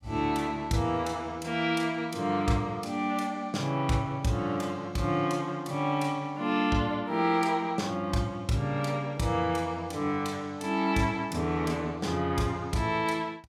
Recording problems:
none

